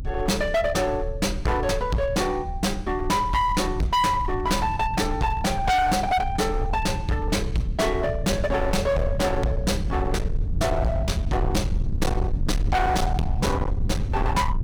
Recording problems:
distorted audio; hard clipping, signal-to-distortion ratio 6 dB
low-frequency rumble; below 110 Hz, SNR 5 dB

